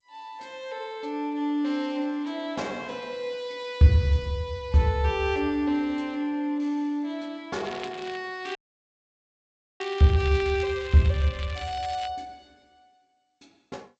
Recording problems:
codec artefacts; G.722, log-spectral distance 3 dB, nothing above 16 kHz
crackle; at 7.5 s and from 8.5 to 12 s; loose cable, SNR 17 dB
audio cutting out; at 8.5 s for 1.5 s

